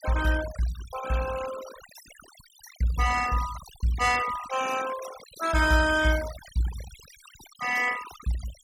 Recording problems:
denoising artefacts; signal-to-artefact ratio 12 dB

